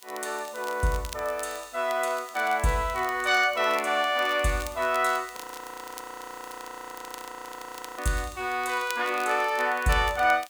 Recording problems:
background hiss; slope +1 dB per octave, SNR 25 dB
crackle; vinyl, SNR 19 dB
frozen audio; at 5.5 s for 2.5 s

